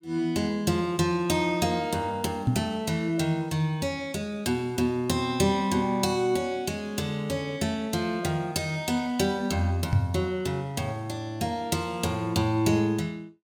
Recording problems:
microphone bump; at 2.5 s and at 10 s; peak +7 dB vs average level

